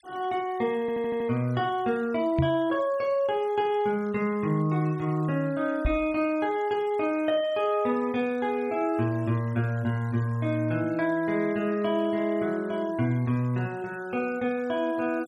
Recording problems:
noise reduction artefacts; signal-to-artefact ratio 26 dB
stutter; at 1 s
microphone bump; at 2.5 s and at 6 s; peak +4 dB vs average level

